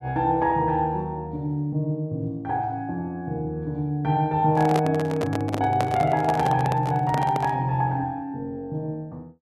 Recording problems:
microphone handling noise; from 4.5 to 7.5 s; peak +1 dB vs average level

